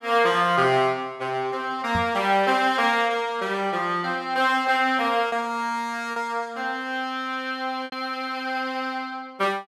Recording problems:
lost packets; 1.7% of the sound replaced, filled with repeated pitch periods
knock on the microphone; at 2 s; peak -2 dB vs average level

